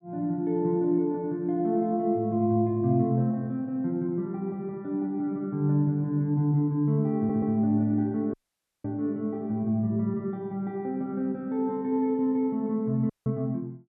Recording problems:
audio stuttering; at 7 s
audio cutting out; at 8.5 s for 0.5 s and at 13 s

